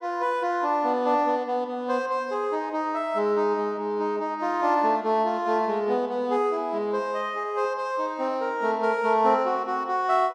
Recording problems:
none

